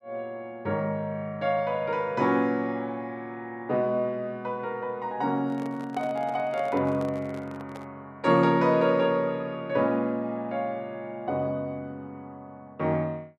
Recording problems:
handling noise; from 5.5 to 8 s; peak -9 dB vs average level

